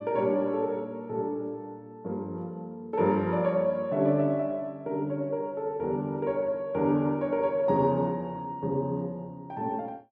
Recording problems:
none

